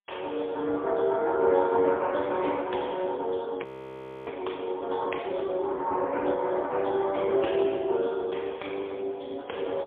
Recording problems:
telephone audio; 300 Hz to 3.4 kHz, AMR-NB, then MP3
audio freezing; at 3.5 s for 0.5 s

